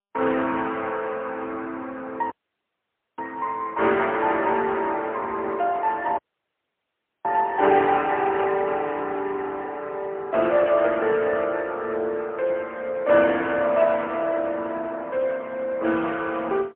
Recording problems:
phone line; 240 Hz to 3.2 kHz, AMR-NB, then MP3
audio cutting out; at 2.5 s for 1 s and at 6 s for 1 s
microphone handling noise; from 6 to 8.5 s; peak -8 dB vs average level

